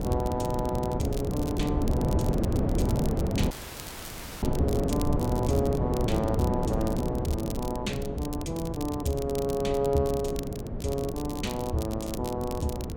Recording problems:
wind on the microphone; below 340 Hz, SNR 0 dB
crackling; vinyl, SNR 13 dB
audio cutting out; at 3.5 s for 1 s

